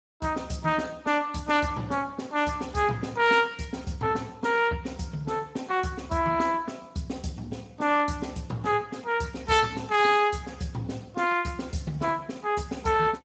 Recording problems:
codec artefacts; Speex, log-spectral distance 5 dB, nothing above 7.8 kHz

